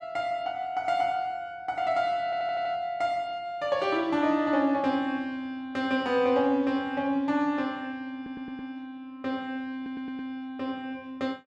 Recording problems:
audio stuttering; at 2 s, at 8 s and at 10 s

